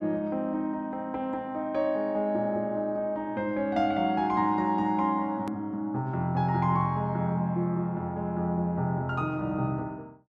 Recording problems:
edit click; at 5.5 s

